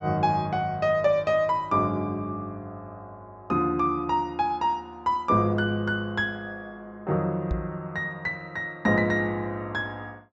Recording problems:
low-pass filter; nothing above 8 kHz
microphone bump; at 7.5 s; peak +1 dB vs average level

